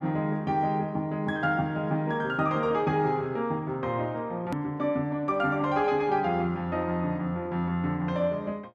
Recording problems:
click at an edit; at 4.5 s

